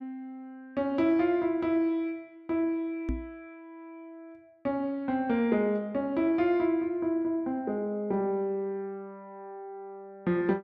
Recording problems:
knock on the microphone; at 3 s; peak 0 dB vs average level

